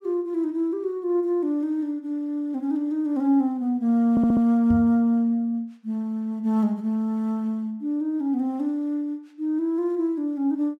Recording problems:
stutter; at 4 s
microphone bump; at 4.5 s; peak 0 dB vs average level

